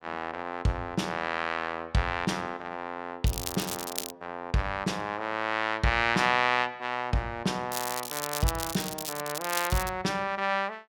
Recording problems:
crackling; at 3.5 s and from 7.5 to 10 s; loose cable, SNR 5 dB

